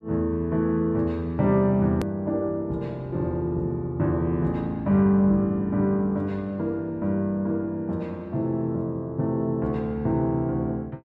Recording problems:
edit click; at 2 s

